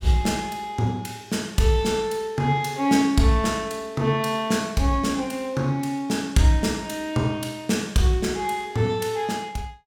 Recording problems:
none

